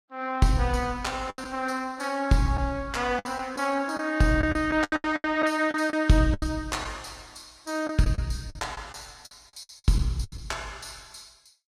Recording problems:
codec artefacts; Vorbis, log-spectral distance 3 dB, nothing above 13.8 kHz
lost packets; 10% of the sound replaced, filled with the last packet

